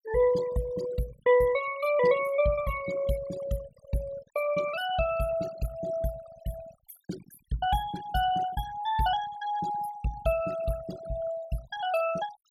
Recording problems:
denoising artefacts; signal-to-artefact ratio 14 dB

